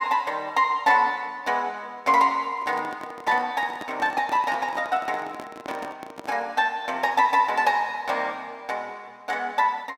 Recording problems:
handling noise; from 2.5 to 6.5 s; peak -9 dB vs average level

